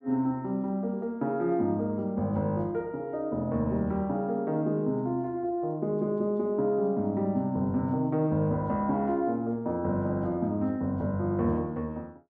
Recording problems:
none

